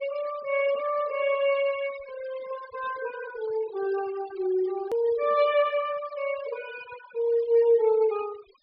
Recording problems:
treble missing; nothing above 5.5 kHz
denoising artefacts; signal-to-artefact ratio 18 dB
click at an edit; at 5 s

